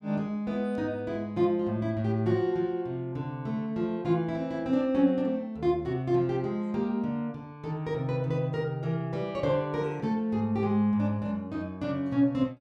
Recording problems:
none

